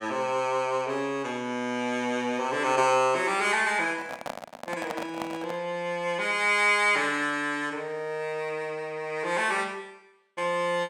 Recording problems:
microphone handling noise; from 4 to 5.5 s; peak -4 dB vs average level

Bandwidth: 17.5 kHz